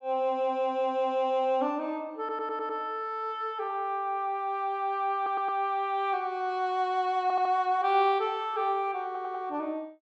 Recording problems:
audio stuttering; 4 times, first at 2 s

